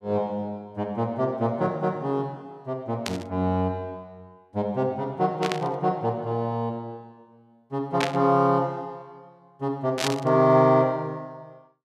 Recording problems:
static burst; 4 times, first at 3 s; peak +3 dB vs average level

